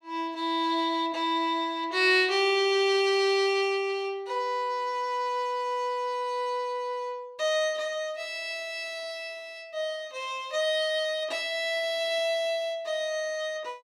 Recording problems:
none

